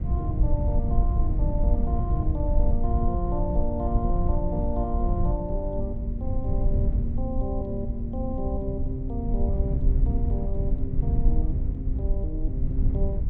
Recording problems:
rumble; below 76 Hz, SNR -5 dB

